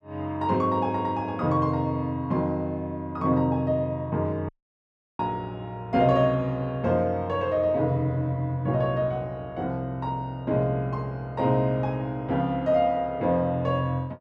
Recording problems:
audio cutting out; at 4.5 s for 0.5 s

